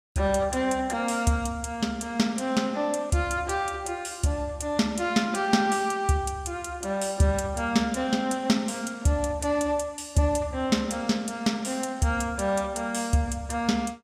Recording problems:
none

